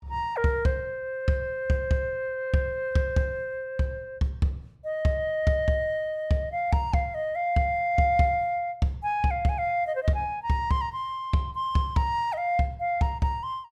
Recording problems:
none

